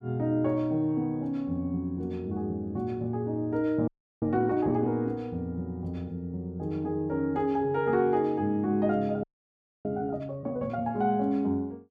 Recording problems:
audio freezing; at 4 s and at 9 s for 0.5 s

